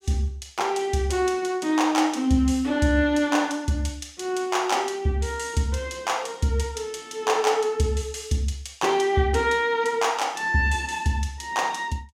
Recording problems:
none

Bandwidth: 16 kHz